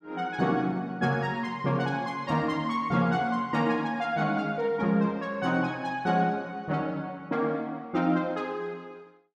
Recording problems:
none

